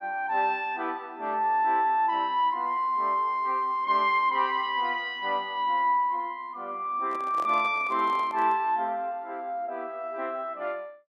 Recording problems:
handling noise; from 7 to 8.5 s; peak -8 dB vs average level

